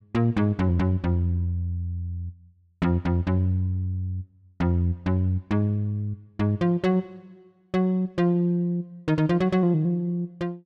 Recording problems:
none

